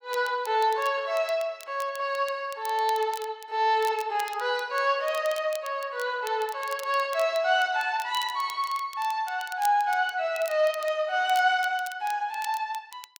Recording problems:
crackle; vinyl, SNR 19 dB

